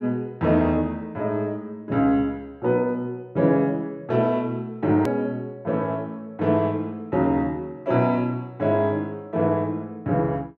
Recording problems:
edit click; at 5 s

